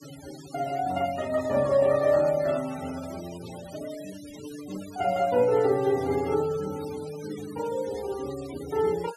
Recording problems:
denoising artefacts; signal-to-artefact ratio 18 dB

